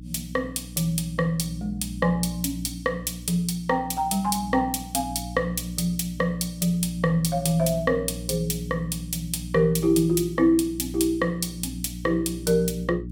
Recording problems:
hum; 60 Hz, harmonics up to 300 Hz, SNR 12 dB

